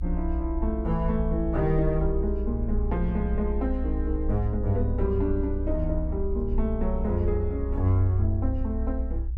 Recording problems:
low-frequency rumble; below 62 Hz, SNR 3 dB

